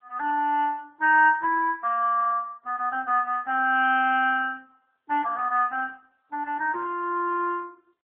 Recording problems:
telephone audio; 320 Hz to 3.1 kHz, AMR-NB

